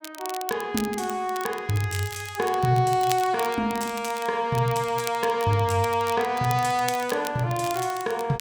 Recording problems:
crackle; vinyl, SNR 13 dB

